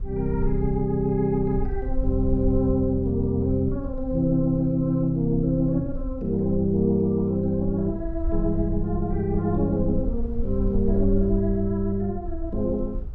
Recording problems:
rumble; below 54 Hz, strongest tone 20 Hz, SNR 9 dB

